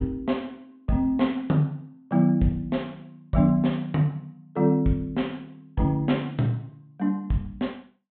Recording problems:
treble missing; nothing above 4 kHz

